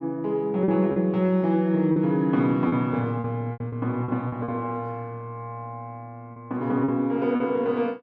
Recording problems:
packet loss; 7% of the sound replaced, filled with repeated pitch periods

